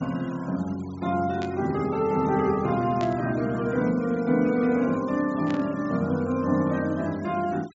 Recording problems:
low-pass filter; nothing above 7.5 kHz
denoising artefacts; signal-to-artefact ratio 22 dB
static burst; at 1.5 s, at 3 s and at 5.5 s; peak -9 dB vs average level

